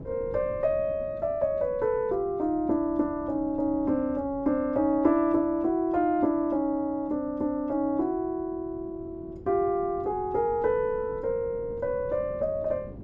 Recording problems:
wind on the microphone; below 300 Hz, SNR 19 dB

